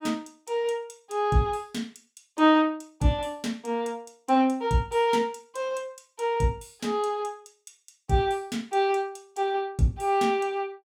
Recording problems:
none

